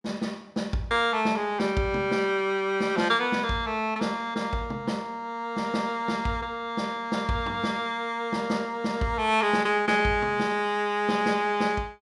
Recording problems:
none

